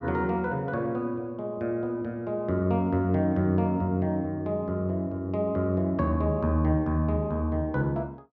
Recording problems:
none

